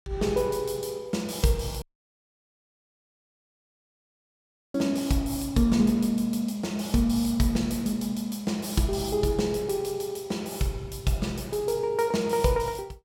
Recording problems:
audio cutting out; at 2 s for 3 s

